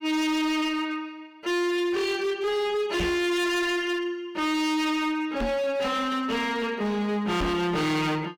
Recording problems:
distorted audio; hard clipping, signal-to-distortion ratio 8 dB
microphone thump; at 3 s, at 5.5 s and at 7.5 s; peak +1 dB vs average level

